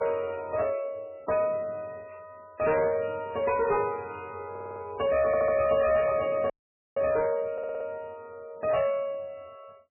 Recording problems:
lossy codec; MP3, log-spectral distance 2 dB, nothing above 2.5 kHz
distorted audio; soft clipping, signal-to-distortion ratio 11 dB
audio stuttering; at 4.5 s, at 5.5 s and at 7.5 s
dropout; at 6.5 s

